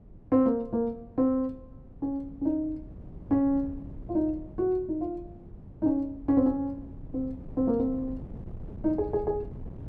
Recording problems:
wind on the microphone; below 190 Hz, SNR 16 dB

